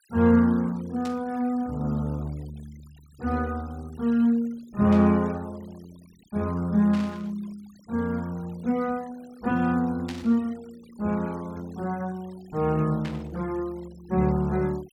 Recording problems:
denoising artefacts; signal-to-artefact ratio 26 dB
burst of static; 5 times, first at 1 s; peak -9 dB vs average level

